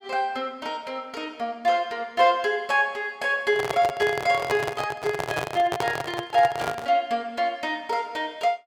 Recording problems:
handling noise; from 3.5 to 7 s; peak +1 dB vs average level

